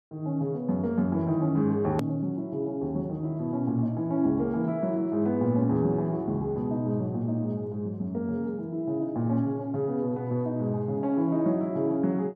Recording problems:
hard cut with a click; at 2 s

